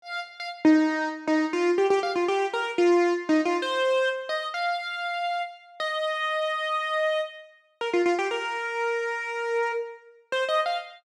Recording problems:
none

